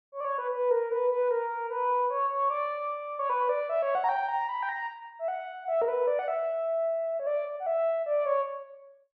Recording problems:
none

